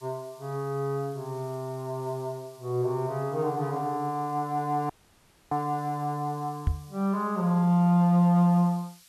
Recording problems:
background hiss; slope +4 dB per octave, SNR 27 dB
audio cutting out; at 5 s for 0.5 s
knock on the microphone; at 6.5 s; peak +4 dB vs average level

